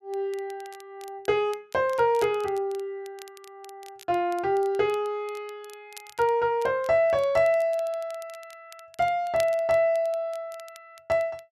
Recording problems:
crackle; vinyl, SNR 24 dB

